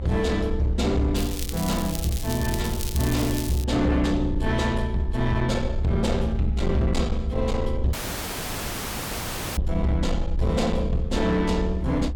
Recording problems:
distorted audio; soft clipping, signal-to-distortion ratio 11 dB
hum; 50 Hz, harmonics up to 1.6 kHz, SNR 20 dB
low-frequency rumble; below 68 Hz, SNR 5 dB
crackle; from 1 to 3.5 s; loose cable, SNR 9 dB
audio cutting out; at 8 s for 1.5 s

